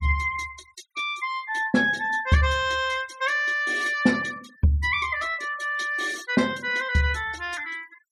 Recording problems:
noise reduction artefacts; signal-to-artefact ratio 21 dB

